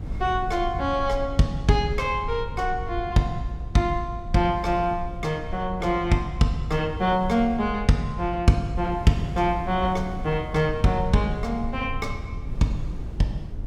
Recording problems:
rumble; below 92 Hz, SNR 11 dB
wind on the microphone; below 390 Hz, SNR 20 dB

